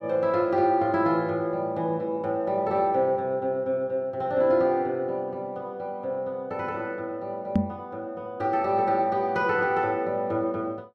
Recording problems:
knock on the microphone; at 7.5 s; peak +7 dB vs average level

